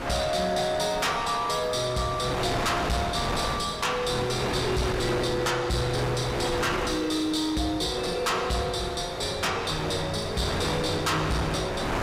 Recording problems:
distortion; soft clipping, signal-to-distortion ratio 11 dB
wind noise; below 1.6 kHz, SNR 5 dB

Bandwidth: 15.5 kHz